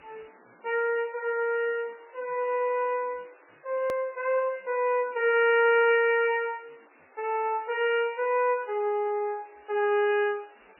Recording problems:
lossy compression; MP3, log-spectral distance 12 dB, nothing above 2.4 kHz
background hiss; SNR 29 dB
click at an edit; at 4 s

